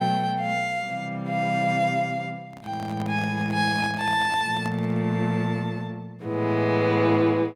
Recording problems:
handling noise; from 2.5 to 5 s; peak -8 dB vs average level

